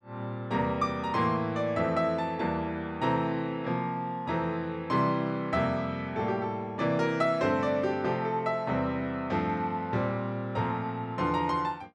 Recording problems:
none

